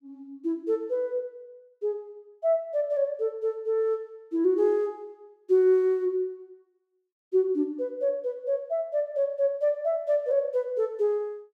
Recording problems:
none

